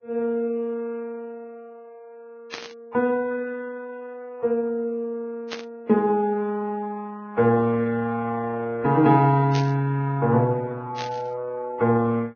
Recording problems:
lossy codec; Vorbis, log-spectral distance 2 dB
static burst; 4 times, first at 2.5 s; peak -4 dB vs average level

